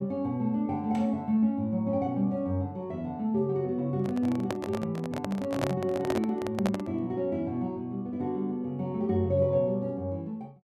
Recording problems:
microphone handling noise; from 4 to 7 s; peak +2 dB vs average level

